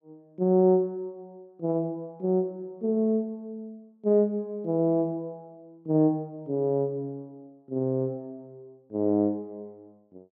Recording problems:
none

